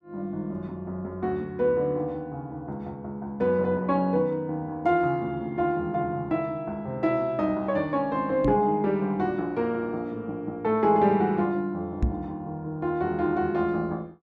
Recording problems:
knock on the microphone; at 8.5 s and at 12 s; peak +5 dB vs average level

